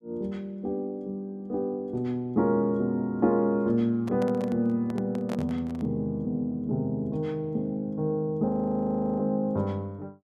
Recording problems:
handling noise; from 4 to 6 s; peak -5 dB vs average level
frozen audio; at 8.5 s for 0.5 s

